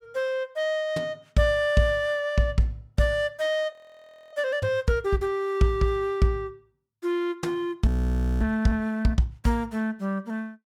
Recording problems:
frozen audio; at 3.5 s for 0.5 s and at 8 s for 0.5 s

